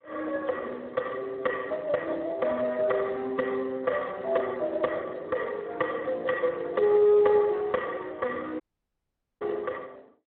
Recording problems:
phone line; 300 Hz to 2 kHz, Speex
dropout; at 8.5 s for 1 s

